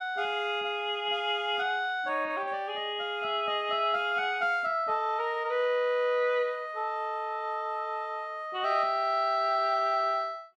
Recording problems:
none

